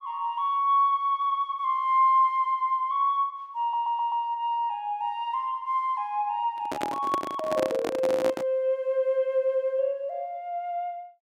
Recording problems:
stutter; at 3.5 s
handling noise; from 6.5 to 8.5 s; peak 0 dB vs average level

